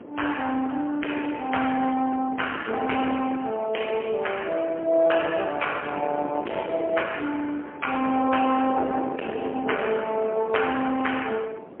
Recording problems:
telephone audio; 300 Hz to 3.2 kHz, AMR-NB, then MP3
distortion; soft clipping, signal-to-distortion ratio 14 dB
wind on the microphone; below 700 Hz, SNR 13 dB

